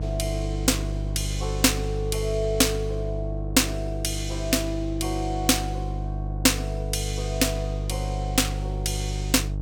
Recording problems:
electrical hum; 50 Hz, harmonics up to 500 Hz, SNR 4 dB

